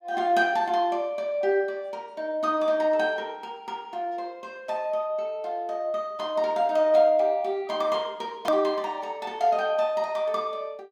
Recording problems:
hard cut with a click; at 8.5 s

